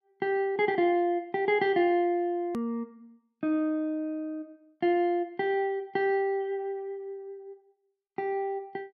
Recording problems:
click at an edit; at 2.5 s

